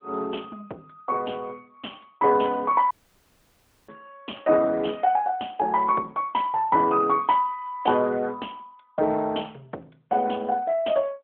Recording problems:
phone line; 280 Hz to 3.3 kHz, AMR-NB
dropout; at 3 s for 1 s

